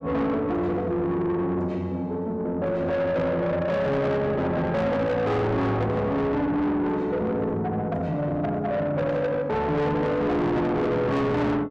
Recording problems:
distortion; soft clipping, signal-to-distortion ratio 8 dB

